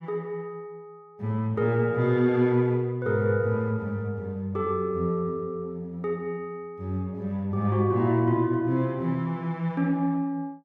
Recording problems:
none

